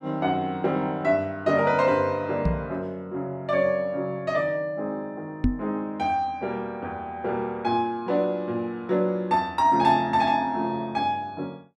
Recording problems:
knock on the microphone; at 2.5 s and at 5.5 s; peak +6 dB vs average level

